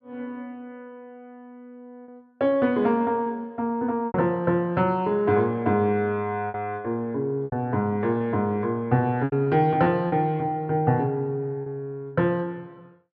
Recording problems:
lost packets; 4% of the sound replaced, filled with repeated pitch periods

